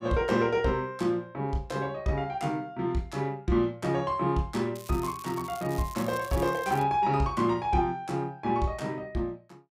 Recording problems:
crackling; from 5 to 7 s; loose cable, SNR 17 dB

